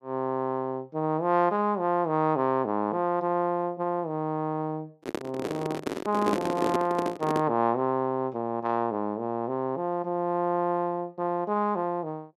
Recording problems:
microphone handling noise; from 5 to 7.5 s; peak +4 dB vs average level

